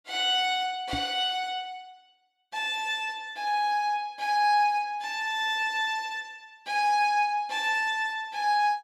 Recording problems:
microphone thump; at 1 s; peak -4 dB vs average level

